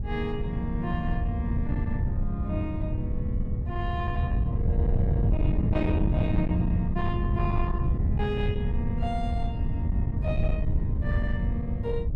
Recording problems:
distorted audio; soft clipping, signal-to-distortion ratio 11 dB
wind noise; below 120 Hz, SNR -4 dB

